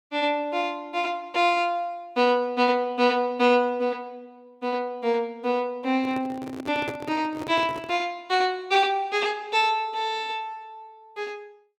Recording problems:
microphone handling noise; from 6 to 8 s; peak -4 dB vs average level

